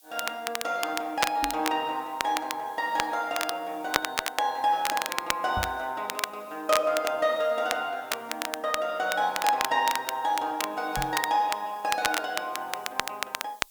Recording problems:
hiss; SNR 25 dB
crackling; vinyl, SNR 4 dB
knock on the microphone; at 1.5 s, at 5.5 s and at 11 s; peak -2 dB vs average level

